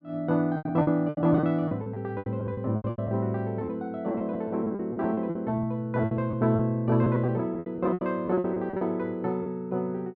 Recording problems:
lost packets; 16% of the sound replaced, filled with repeated pitch periods

